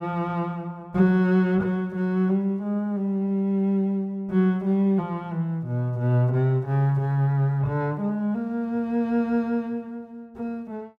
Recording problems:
none

